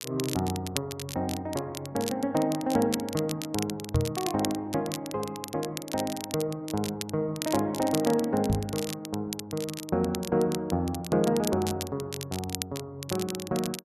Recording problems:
crackling; vinyl, SNR 9 dB
microphone thump; at 4 s and at 8.5 s; peak +7 dB vs average level

